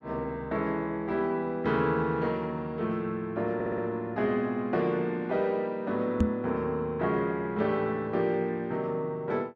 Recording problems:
stutter; at 3.5 s
microphone bump; at 6 s; peak +9 dB vs average level

